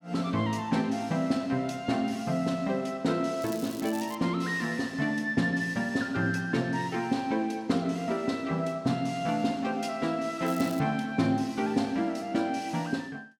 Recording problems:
crackle; at 3.5 s and at 10 s; loose cable, SNR 17 dB

